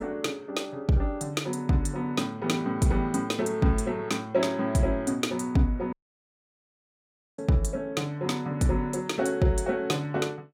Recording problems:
dropout; at 6 s for 1.5 s

